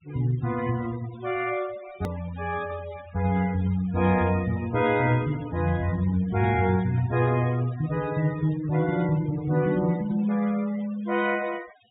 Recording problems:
treble missing; nothing above 4 kHz
noise reduction artefacts; signal-to-artefact ratio 18 dB
hard cut with a click; at 2 s

